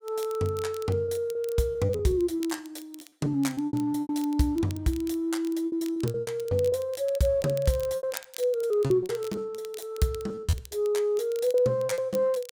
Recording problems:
crackle; vinyl, SNR 20 dB
lost packets; 14% of the sound replaced, filled with repeated pitch periods

